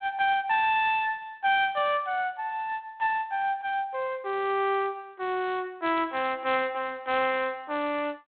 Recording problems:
telephone audio; 280 Hz to 3.9 kHz, G.726

